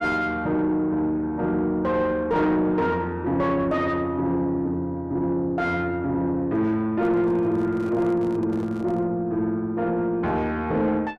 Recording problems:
distortion; soft clipping, signal-to-distortion ratio 10 dB
handling noise; from 7 to 9 s; peak -11 dB vs average level

